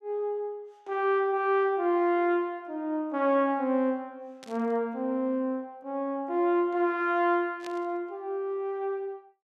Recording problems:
static burst; at 4.5 s and at 7.5 s; peak -12 dB vs average level

